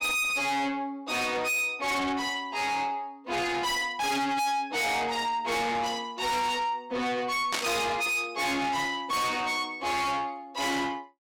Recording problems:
distortion; soft clipping, signal-to-distortion ratio 6 dB
static burst; at 7.5 s; peak +3 dB vs average level

